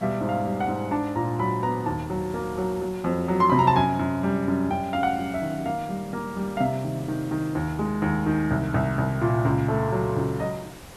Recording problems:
background hiss; slope -4 dB per octave, SNR 21 dB

